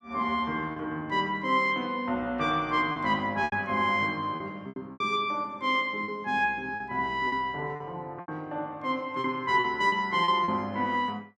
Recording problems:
packet loss; 7% of the sound replaced, filled with repeated pitch periods

